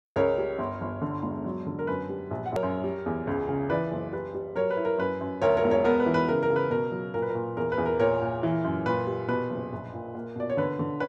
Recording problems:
edit click; at 2.5 s

